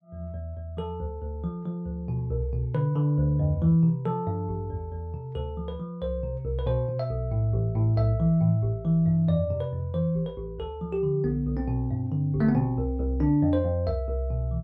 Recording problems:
none

